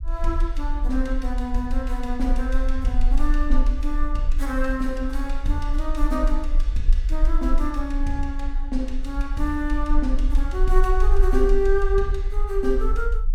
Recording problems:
low-frequency rumble; below 40 Hz, strongest tone 22 Hz, SNR -1 dB

